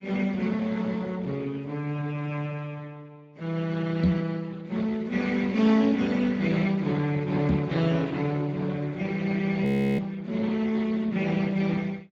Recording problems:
lossy compression; Speex, log-spectral distance 4 dB, nothing above 18.9 kHz
knock on the microphone; at 4 s and at 7.5 s; peak +8 dB vs average level
audio freezing; at 9.5 s

